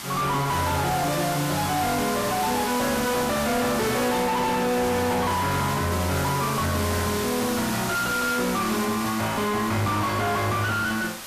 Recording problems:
distorted audio; soft clipping, signal-to-distortion ratio 6 dB
hiss; SNR 7 dB

